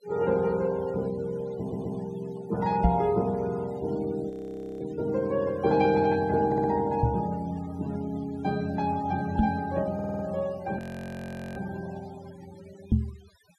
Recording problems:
denoising artefacts; signal-to-artefact ratio 21 dB
stutter; at 1.5 s, at 6.5 s and at 10 s
microphone bump; 4 times, first at 3 s; peak +9 dB vs average level
frozen audio; at 4.5 s for 0.5 s and at 11 s for 1 s

